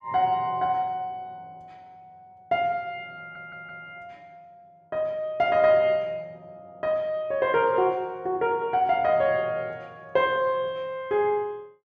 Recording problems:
stutter; at 3 s

